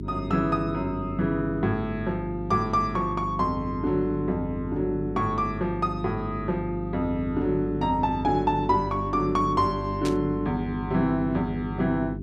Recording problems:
hum; 50 Hz, harmonics up to 400 Hz, SNR 7 dB
burst of static; at 10 s; peak -5 dB vs average level

